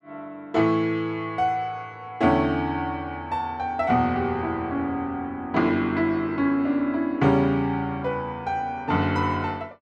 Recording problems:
none

